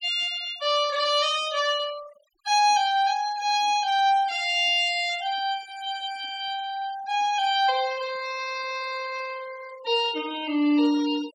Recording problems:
noise reduction artefacts; signal-to-artefact ratio 18 dB

